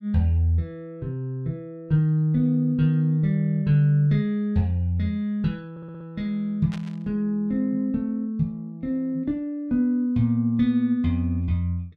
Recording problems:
audio stuttering; at 5.5 s
burst of static; at 6.5 s; peak -12 dB vs average level

